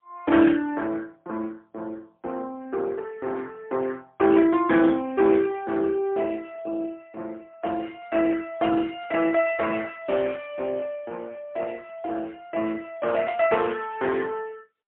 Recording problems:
telephone audio; 240 Hz to 3.3 kHz, AMR-NB, then MP3

